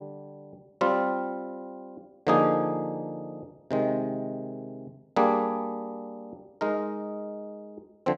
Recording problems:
none

